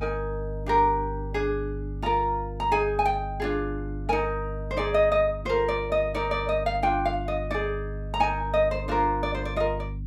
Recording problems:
hum; 50 Hz, harmonics up to 300 Hz, SNR 9 dB

